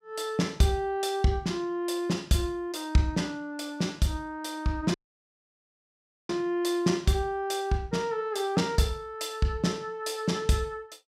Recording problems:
dropout; at 5 s for 1.5 s

